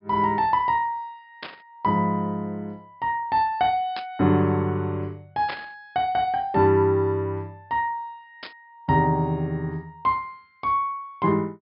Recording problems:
treble missing; nothing above 5.5 kHz
static burst; 4 times, first at 1.5 s; peak -5 dB vs average level

